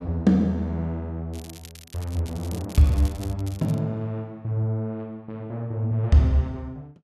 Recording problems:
crackling; from 1.5 to 4 s; loose cable, SNR 20 dB

